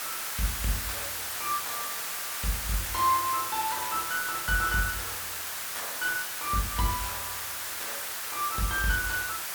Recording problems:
hiss; SNR 1 dB

